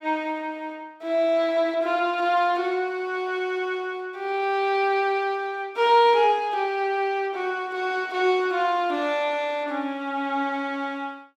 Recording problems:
none

